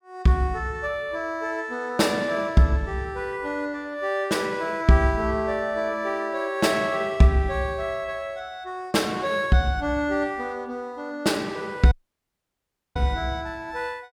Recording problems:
dropout; at 12 s for 1 s

